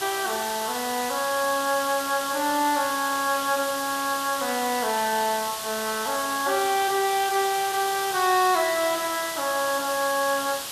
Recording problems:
hiss; SNR 6 dB

